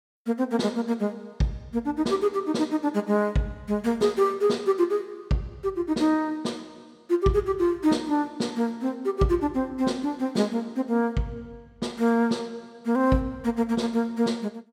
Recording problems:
none

